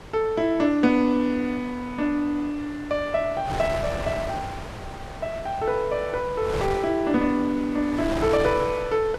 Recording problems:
wind on the microphone; below 1.2 kHz, SNR 11 dB

